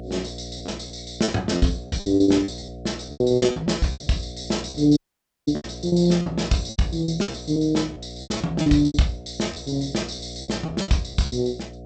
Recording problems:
codec artefacts; G.722, log-spectral distance 7 dB, nothing above 8 kHz
electrical hum; 60 Hz, harmonics up to 720 Hz, SNR 15 dB
packet loss; 16% of the sound replaced, filled with repeated pitch periods
audio cutting out; at 5 s for 0.5 s

